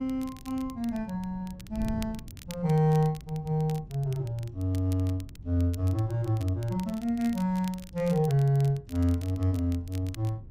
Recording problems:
wind on the microphone; below 150 Hz, SNR 18 dB
crackling; vinyl, SNR 22 dB

